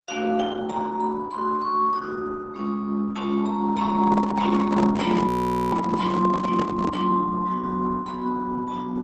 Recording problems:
lossy compression; Opus, log-spectral distance 4 dB, nothing above 15.1 kHz
handling noise; from 4 to 7 s; peak -3 dB vs average level
audio freezing; at 5.5 s

